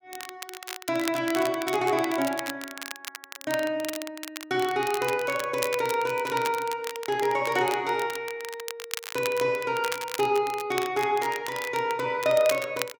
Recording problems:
crackle; vinyl, SNR 11 dB

